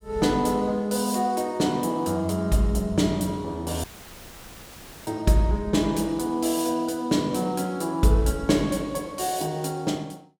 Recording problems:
audio cutting out; at 4 s for 1 s; filled with static

